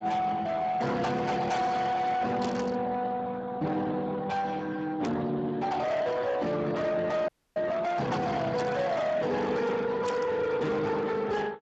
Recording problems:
lossy codec; Speex, log-spectral distance 4 dB, nothing above 7.3 kHz
distortion; soft clipping, signal-to-distortion ratio 8 dB
static burst; 4 times, first at 2.5 s; peak -7 dB vs average level
frozen audio; at 7.5 s

